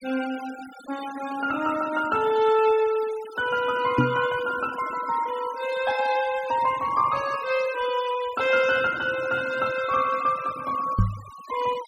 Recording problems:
noise reduction artefacts; signal-to-artefact ratio 17 dB
microphone thump; at 4 s and at 11 s; peak +6 dB vs average level

